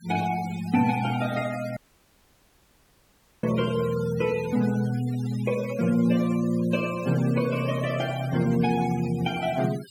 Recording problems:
noise reduction artefacts; signal-to-artefact ratio 16 dB
audio cutting out; at 2 s for 1.5 s

